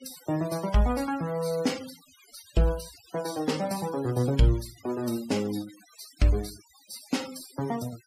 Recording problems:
denoising artefacts; signal-to-artefact ratio 16 dB

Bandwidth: 15 kHz